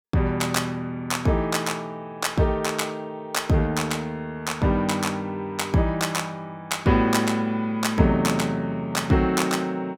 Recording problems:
none

